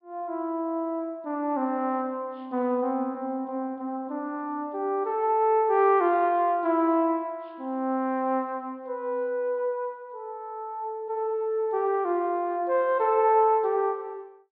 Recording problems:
treble cut off; nothing above 5.5 kHz

